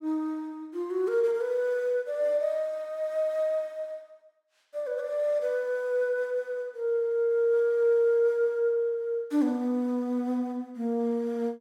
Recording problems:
none

